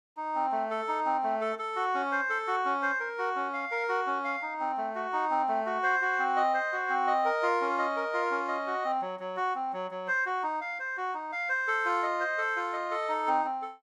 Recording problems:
none

